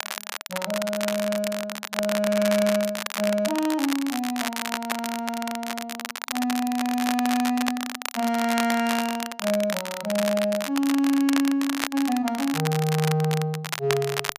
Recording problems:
crackling; vinyl, SNR 6 dB

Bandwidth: 15 kHz